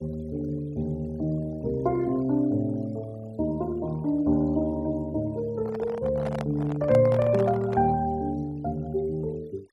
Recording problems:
denoising artefacts; signal-to-artefact ratio 25 dB
handling noise; from 5.5 to 8 s; peak -3 dB vs average level

